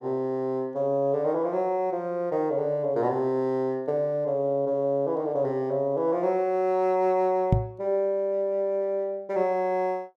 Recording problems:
microphone thump; at 7.5 s; peak +8 dB vs average level

